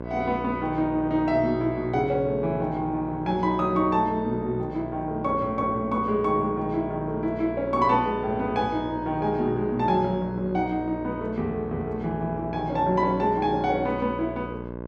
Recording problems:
electrical hum; 60 Hz, harmonics up to 1.6 kHz, SNR 10 dB

